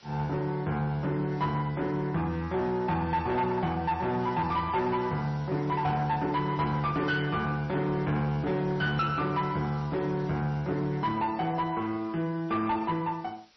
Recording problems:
lossy compression; MP3, log-spectral distance 3 dB, nothing above 5.5 kHz
distortion; soft clipping, signal-to-distortion ratio 11 dB
background hiss; slope 0 dB per octave, SNR 26 dB

